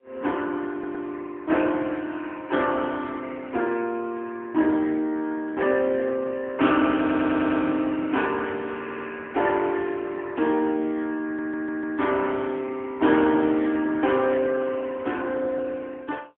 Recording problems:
telephone audio; 240 Hz to 3.5 kHz, AMR-NB, then MP3
audio stuttering; 4 times, first at 0.5 s

